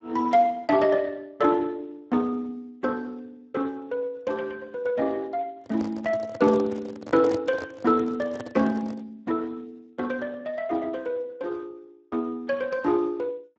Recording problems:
lossy codec; Speex, log-spectral distance 3 dB
microphone handling noise; from 5.5 to 9 s; peak -2 dB vs average level

